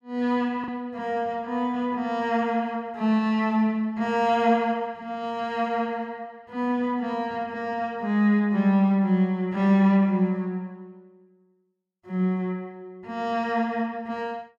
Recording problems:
packet loss; 0.3% of the sound replaced, filled with the last packet

